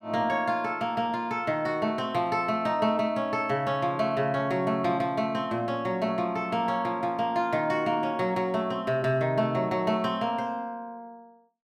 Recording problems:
none

